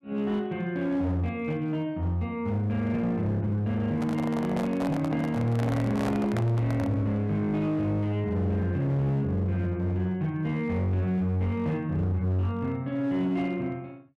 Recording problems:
distortion; hard clipping, signal-to-distortion ratio 11 dB
microphone handling noise; from 4 to 7 s; peak -1 dB vs average level

